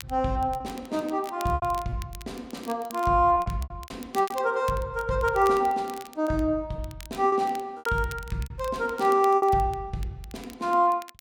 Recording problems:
crackle; vinyl, SNR 21 dB
lost packets; 8% of the sound replaced, filled with repeated pitch periods

